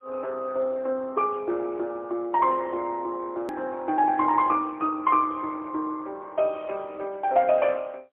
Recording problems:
telephone audio; 280 Hz to 3.2 kHz, AMR-NB, then MP3
hard cut with a click; at 3.5 s

